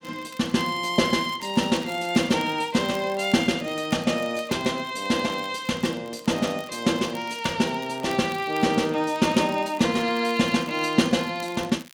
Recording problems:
crackle; vinyl, SNR 23 dB

